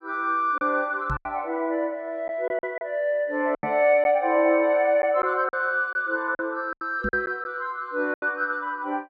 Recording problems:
lost packets; 7% of the sound replaced, filled with silence
knock on the microphone; at 1 s, at 3.5 s and at 7 s; peak -3 dB vs average level

